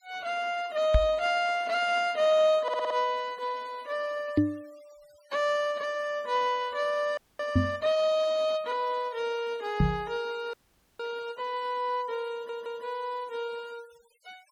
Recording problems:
denoising artefacts; signal-to-artefact ratio 24 dB
microphone bump; 4 times, first at 1 s; peak +9 dB vs average level
stutter; at 2.5 s and at 12 s
frozen audio; at 7 s and at 11 s

